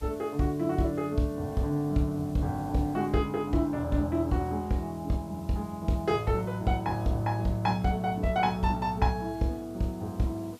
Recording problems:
hiss; slope 0 dB per octave, SNR 27 dB

